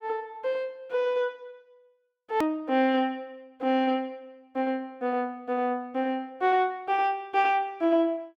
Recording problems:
click at an edit; at 2.5 s

